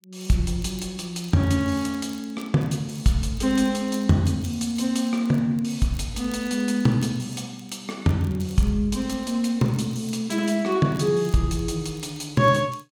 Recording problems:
crackle; vinyl, SNR 28 dB

